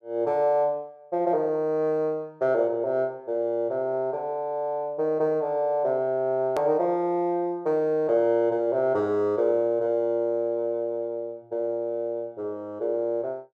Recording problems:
click at an edit; at 6.5 s

